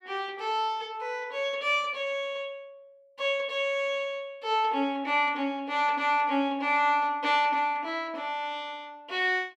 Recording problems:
none

